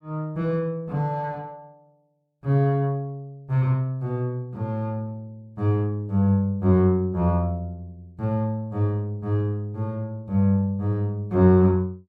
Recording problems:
none

